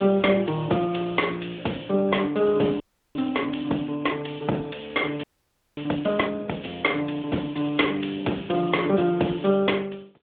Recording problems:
phone line; 240 Hz to 3.5 kHz, AMR-NB
frozen audio; at 3 s and at 5 s for 0.5 s

